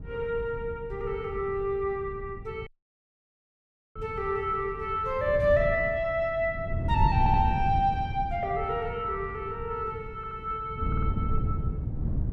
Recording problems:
wind on the microphone; below 130 Hz, SNR 5 dB
audio cutting out; at 2.5 s for 1.5 s
stutter; at 7 s, at 10 s and at 11 s

